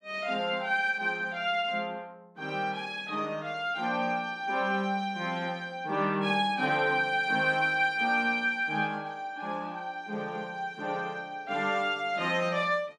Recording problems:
none

